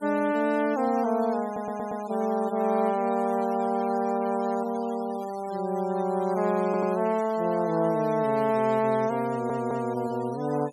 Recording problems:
noise reduction artefacts; signal-to-artefact ratio 20 dB
audio stuttering; at 1.5 s, at 6.5 s and at 9.5 s

